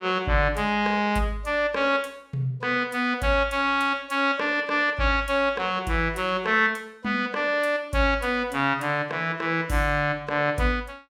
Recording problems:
none

